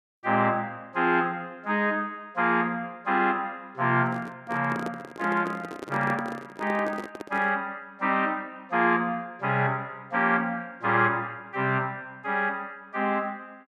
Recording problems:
microphone handling noise; from 4 to 7.5 s; peak -4 dB vs average level

